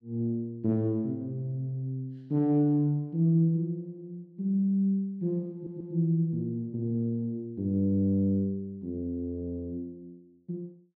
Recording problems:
audio stuttering; at 5.5 s

